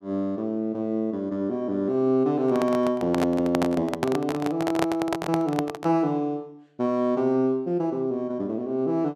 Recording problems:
handling noise; from 2.5 to 6 s; peak +3 dB vs average level

